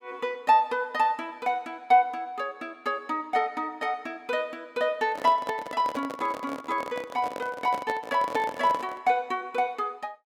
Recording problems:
handling noise; from 5 to 9 s; peak -1 dB vs average level

